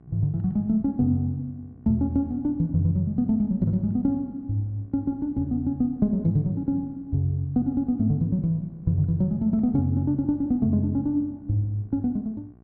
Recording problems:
mains hum; 60 Hz, harmonics up to 1.1 kHz, SNR 28 dB

